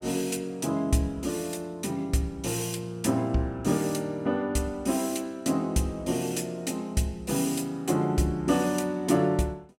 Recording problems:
none

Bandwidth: 16.5 kHz